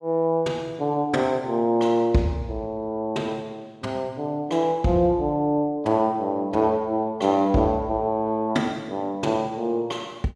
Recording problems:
none

